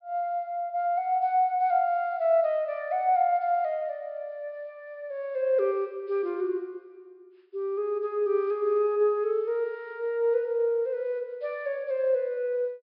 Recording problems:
low-pass filter; nothing above 5.5 kHz

